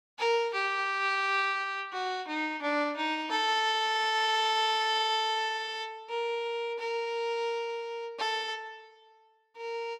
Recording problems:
none

